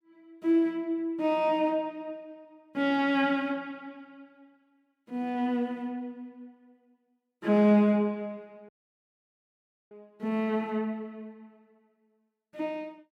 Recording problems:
dropout; at 8.5 s for 1 s

